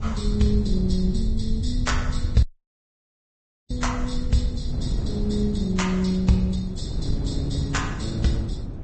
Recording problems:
low-pass filter; nothing above 8 kHz
codec artefacts; Vorbis, log-spectral distance 3 dB
rumble; below 78 Hz, SNR 6 dB
wind noise; below 190 Hz, SNR 6 dB
audio cutting out; at 2.5 s for 1.5 s

